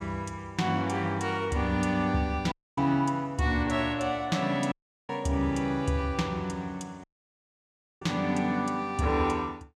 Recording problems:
audio cutting out; at 2.5 s, at 4.5 s and at 7 s for 1 s

